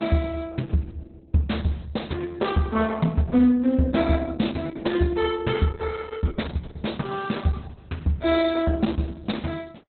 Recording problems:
lossy codec; Opus, log-spectral distance 4 dB, nothing above 4 kHz

